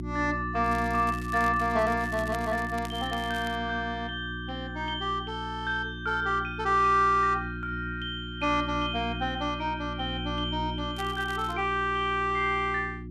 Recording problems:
hum; 60 Hz, harmonics up to 360 Hz, SNR 9 dB
crackling; from 0.5 to 3.5 s and at 11 s; loose cable, SNR 19 dB

